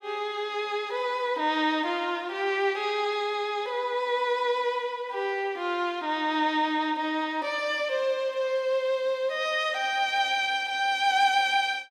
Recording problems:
none

